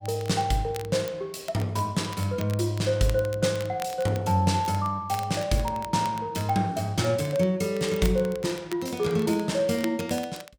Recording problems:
crackling; vinyl, SNR 19 dB

